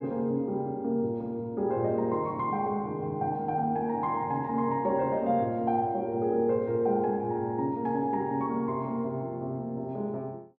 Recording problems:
none

